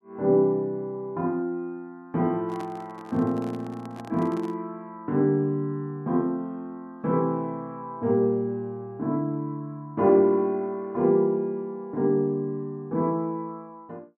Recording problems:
microphone handling noise; from 2.5 to 4.5 s; peak -10 dB vs average level

